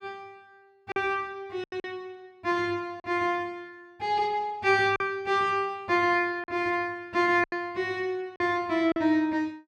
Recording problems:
lost packets; 5% of the sound replaced, filled with silence

